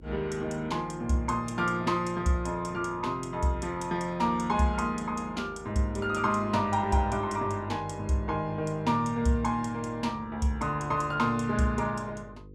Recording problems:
electrical hum; 50 Hz, harmonics up to 500 Hz, SNR 21 dB

